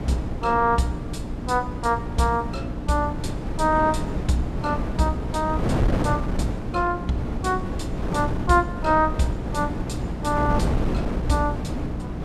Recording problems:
hum; 60 Hz, harmonics up to 300 Hz, SNR 10 dB
wind on the microphone; below 340 Hz, SNR 4 dB

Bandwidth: 14 kHz